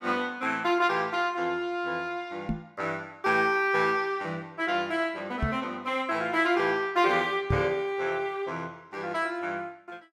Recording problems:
microphone thump; at 2.5 s, at 5.5 s and at 7.5 s; peak +3 dB vs average level

